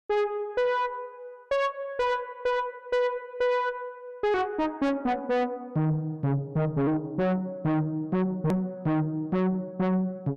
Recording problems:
distortion; soft clipping, signal-to-distortion ratio 6 dB
click at an edit; at 8.5 s

